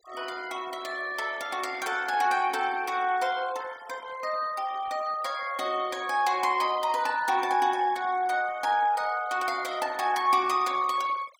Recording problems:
noise reduction artefacts; signal-to-artefact ratio 20 dB

